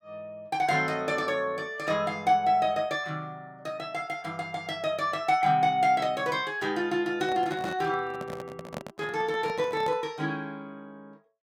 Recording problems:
handling noise; from 7 to 10 s; peak -5 dB vs average level

